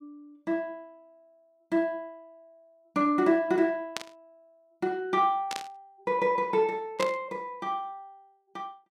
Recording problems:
static burst; at 4 s, at 5.5 s and at 7 s; peak 0 dB vs average level

